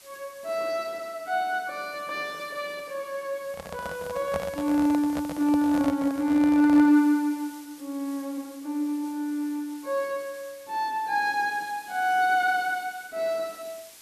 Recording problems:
hiss; slope +1 dB per octave, SNR 22 dB
handling noise; from 3.5 to 7 s; peak -2 dB vs average level

